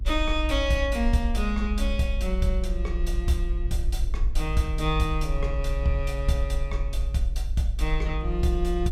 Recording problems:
rumble; below 54 Hz, strongest tone 32 Hz, SNR 1 dB

